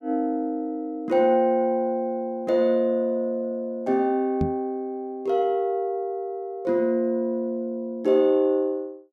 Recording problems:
microphone bump; at 4.5 s; peak +2 dB vs average level

